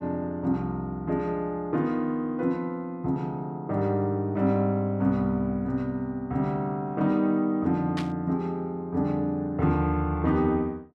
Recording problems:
static burst; at 8 s; peak -5 dB vs average level

